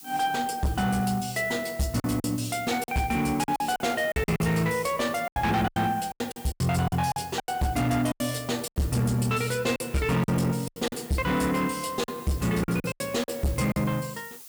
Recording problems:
distortion; hard clipping, uneven, signal-to-distortion ratio 11 dB
background hiss; slope +4 dB per octave, SNR 18 dB
packet loss; 11% of the sound replaced, filled with silence

